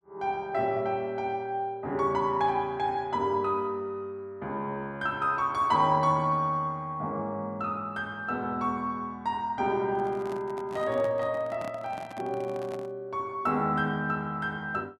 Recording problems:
microphone handling noise; from 10 to 13 s; peak -9 dB vs average level

